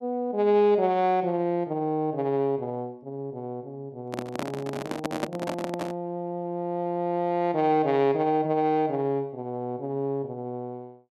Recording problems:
handling noise; from 4 to 6 s; peak +2 dB vs average level

